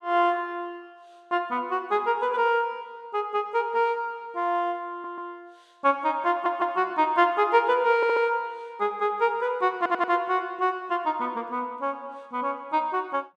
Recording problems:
audio stuttering; 4 times, first at 5 s

